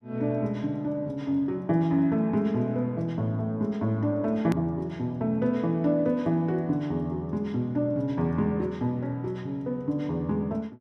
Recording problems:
click at an edit; at 4.5 s

